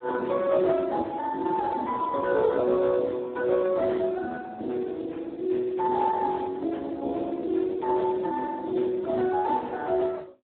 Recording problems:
phone line; 240 Hz to 2.2 kHz, Speex

